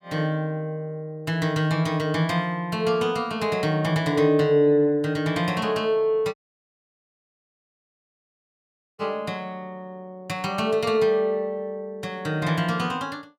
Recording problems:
dropout; at 6.5 s for 2.5 s

